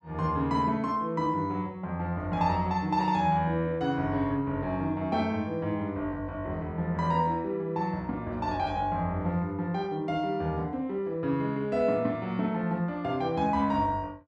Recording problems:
none

